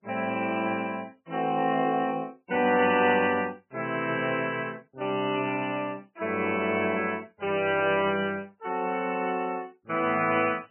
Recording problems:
lossy codec; MP3, log-spectral distance 4 dB, nothing above 2.4 kHz

